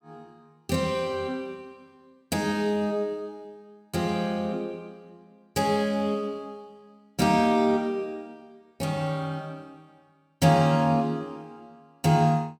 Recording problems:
none

